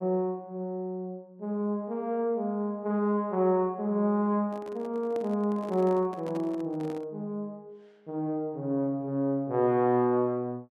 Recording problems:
microphone handling noise; from 4.5 to 7 s; peak -10 dB vs average level

